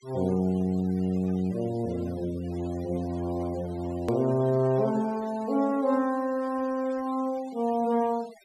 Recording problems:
denoising artefacts; signal-to-artefact ratio 22 dB
hard cut with a click; at 4 s

